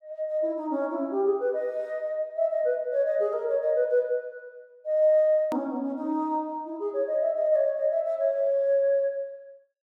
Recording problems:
hard cut with a click; at 5.5 s

